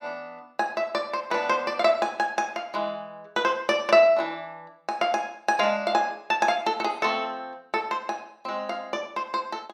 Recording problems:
none

